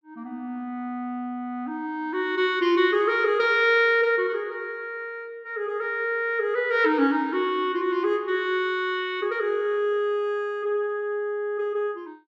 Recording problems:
none

